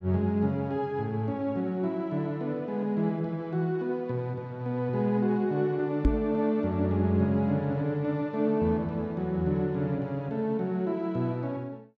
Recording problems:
knock on the microphone; at 6 s; peak +8 dB vs average level

